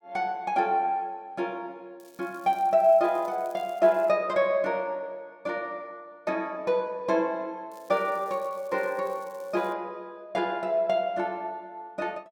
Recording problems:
crackle; from 2 to 4 s and from 7.5 to 9.5 s; loose cable, SNR 29 dB

